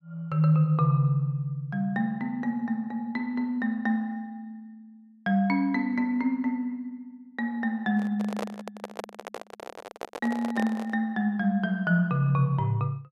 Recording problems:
microphone handling noise; from 8 to 11 s; peak -3 dB vs average level

